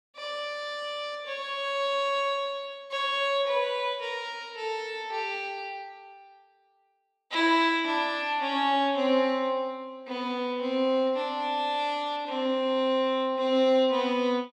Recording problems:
none

